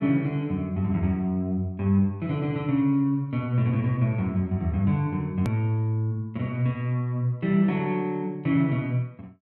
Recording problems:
edit click; at 5.5 s

